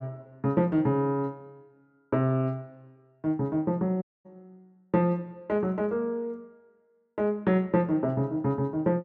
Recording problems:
audio cutting out; at 4 s

